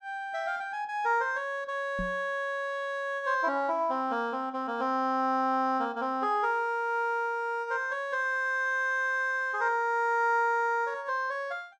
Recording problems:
microphone bump; at 2 s; peak -5 dB vs average level

